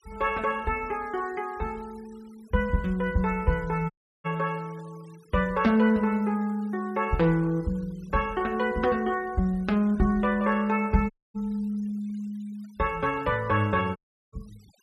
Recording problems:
denoising artefacts; signal-to-artefact ratio 27 dB
audio cutting out; at 4 s, at 11 s and at 14 s

